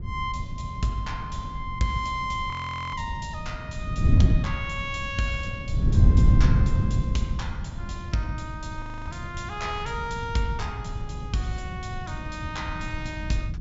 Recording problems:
low-pass filter; nothing above 8 kHz
wind noise; below 130 Hz, SNR -4 dB
frozen audio; at 2.5 s and at 9 s

